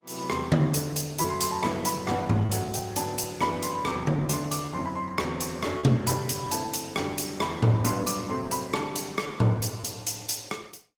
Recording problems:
lossy codec; Opus, log-spectral distance 5 dB, nothing above 19 kHz
lost packets; 4% of the sound replaced, filled with repeated pitch periods

